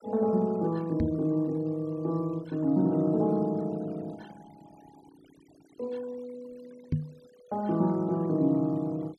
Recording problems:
denoising artefacts; signal-to-artefact ratio 27 dB
knock on the microphone; at 1 s and at 7 s; peak +4 dB vs average level

